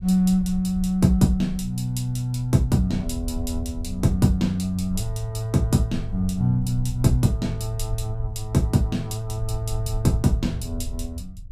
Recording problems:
low-frequency rumble; below 66 Hz, SNR 12 dB

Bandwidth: 15.5 kHz